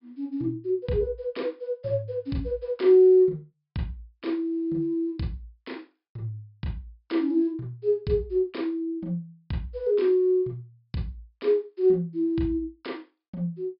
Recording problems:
treble missing; nothing above 5.5 kHz

